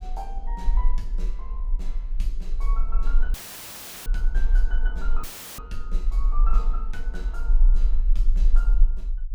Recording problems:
rumble; below 36 Hz, strongest tone 18 Hz, SNR -14 dB
dropout; at 3.5 s for 0.5 s and at 5 s; filled with static

